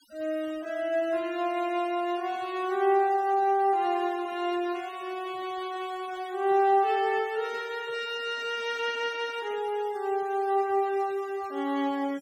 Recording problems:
noise reduction artefacts; signal-to-artefact ratio 23 dB

